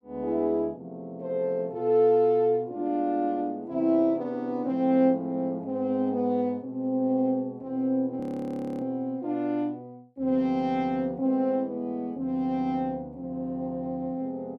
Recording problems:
frozen audio; at 8 s for 0.5 s

